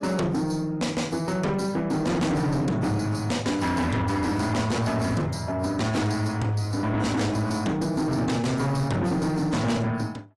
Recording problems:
lossy compression; AAC, log-spectral distance 2 dB, nothing above 11.3 kHz
distortion; soft clipping, signal-to-distortion ratio 8 dB

